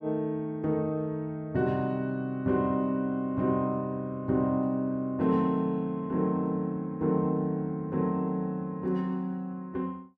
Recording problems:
none

